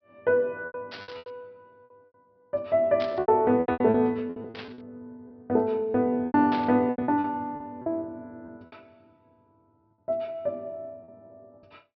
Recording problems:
low-pass filter; nothing above 5.5 kHz
lost packets; 13% of the sound replaced, filled with repeated pitch periods
static burst; 4 times, first at 1 s; peak -7 dB vs average level

